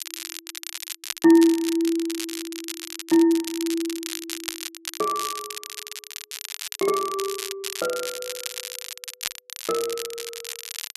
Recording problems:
crackling; vinyl, SNR 9 dB

